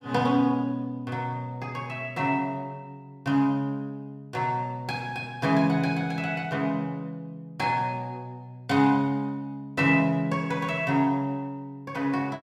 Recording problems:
none

